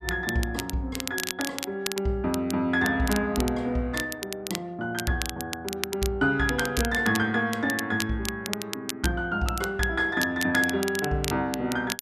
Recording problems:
crackle; vinyl, SNR 8 dB

